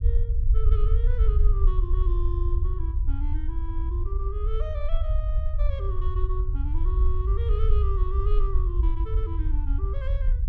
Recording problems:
rumble; below 60 Hz, SNR -12 dB

